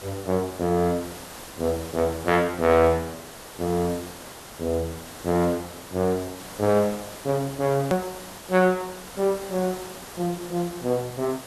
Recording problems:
hiss; slope -4 dB per octave, SNR 14 dB
click at an edit; at 8 s

